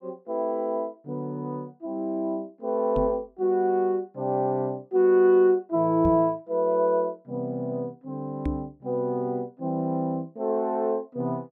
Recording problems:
microphone thump; at 3 s, at 6 s and at 8.5 s; peak 0 dB vs average level

